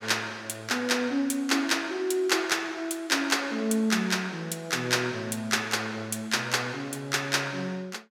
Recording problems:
none

